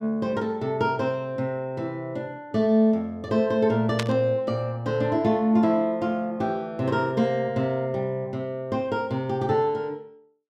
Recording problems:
burst of static; at 4 s; peak +1 dB vs average level

